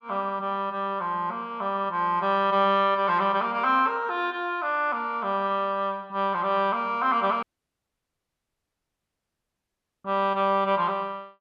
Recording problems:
audio cutting out; at 7.5 s for 2.5 s

